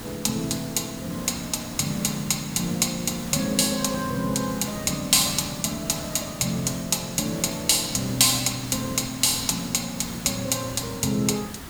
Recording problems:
hiss; slope -3 dB per octave, SNR 13 dB

